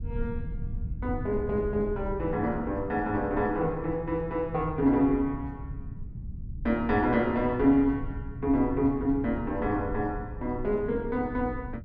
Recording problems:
rumble; below 120 Hz, SNR 11 dB

